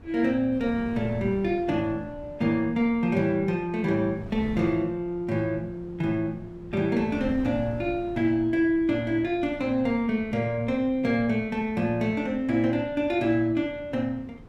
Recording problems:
wind noise; below 270 Hz, SNR 17 dB

